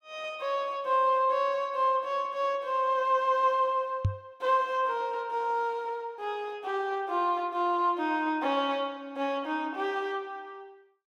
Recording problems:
microphone thump; at 4 s; peak +5 dB vs average level

